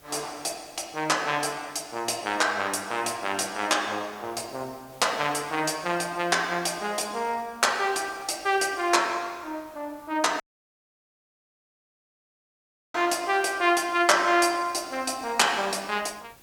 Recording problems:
hiss; slope -3 dB per octave, SNR 27 dB
dropout; at 10 s for 2.5 s

